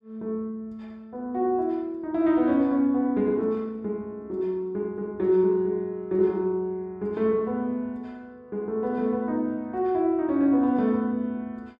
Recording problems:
none

